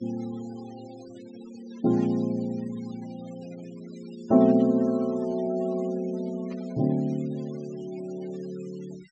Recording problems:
treble cut off; nothing above 8 kHz
noise reduction artefacts; signal-to-artefact ratio 24 dB
static burst; at 2 s, at 4.5 s and at 6.5 s; peak -22 dB vs average level

